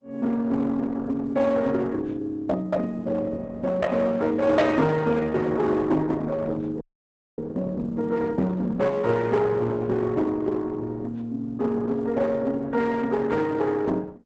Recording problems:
lossy codec; Opus, log-spectral distance 2 dB, nothing above 8 kHz
distorted audio; hard clipping, uneven, signal-to-distortion ratio 11 dB
frozen audio; at 7 s for 0.5 s

